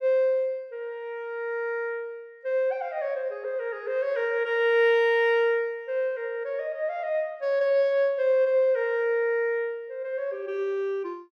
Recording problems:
none

